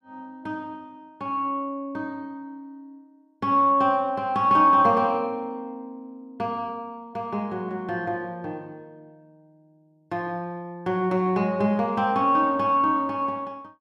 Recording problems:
none

